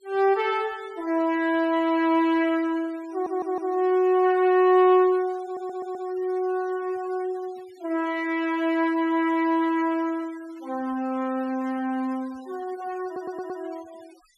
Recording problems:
denoising artefacts; signal-to-artefact ratio 26 dB
stutter; at 3 s, at 5.5 s and at 13 s

